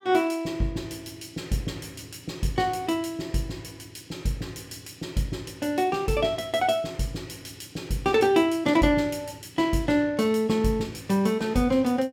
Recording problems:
none

